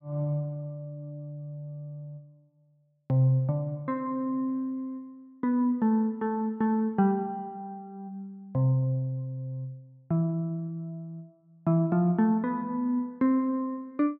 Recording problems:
none

